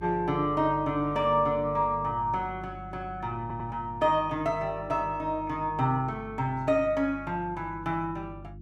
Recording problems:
electrical hum; 50 Hz, harmonics up to 350 Hz, SNR 16 dB
audio stuttering; at 3.5 s

